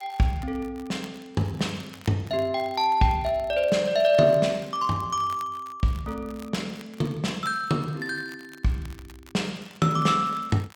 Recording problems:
crackle; vinyl, SNR 25 dB

